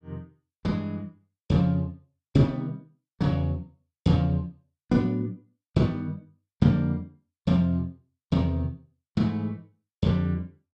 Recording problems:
none

